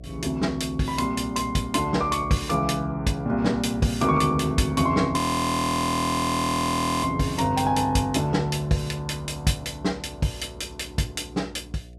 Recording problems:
electrical hum; 60 Hz, harmonics up to 720 Hz, SNR 19 dB
frozen audio; at 5 s for 2 s

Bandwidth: 14.5 kHz